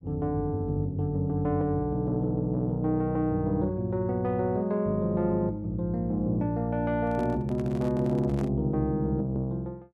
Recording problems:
microphone handling noise; from 7 to 8.5 s; peak -8 dB vs average level

